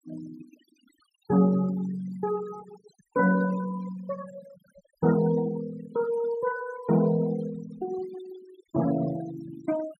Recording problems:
denoising artefacts; signal-to-artefact ratio 16 dB

